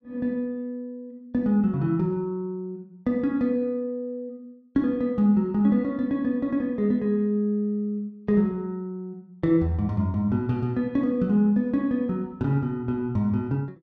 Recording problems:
none

